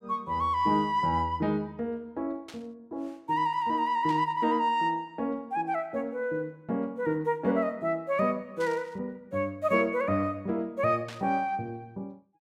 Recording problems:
burst of static; 4 times, first at 2.5 s; peak -10 dB vs average level

